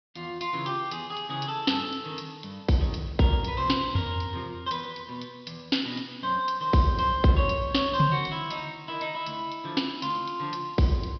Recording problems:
low-pass filter; nothing above 5.5 kHz

